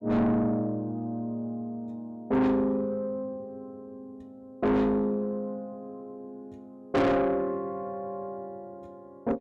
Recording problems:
distortion; soft clipping, signal-to-distortion ratio 6 dB

